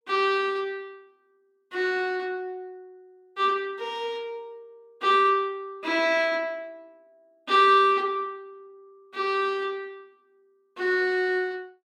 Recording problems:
none

